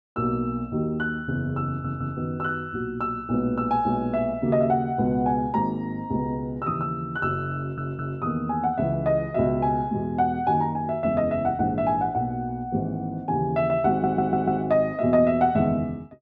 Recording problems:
audio stuttering; at 1.5 s, at 7.5 s and at 14 s

